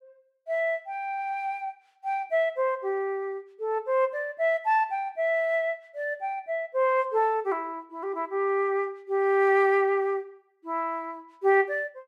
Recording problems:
none

